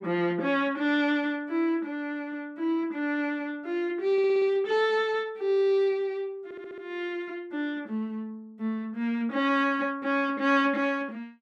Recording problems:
audio stuttering; at 4 s and at 6.5 s

